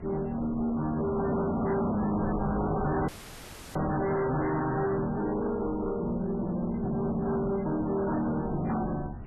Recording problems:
lossy codec; MP3, then MP3, log-spectral distance 3 dB, nothing above 10.7 kHz
distorted audio; hard clipping, uneven, signal-to-distortion ratio 6 dB
wind noise; below 390 Hz, SNR 11 dB
audio cutting out; at 3 s for 0.5 s

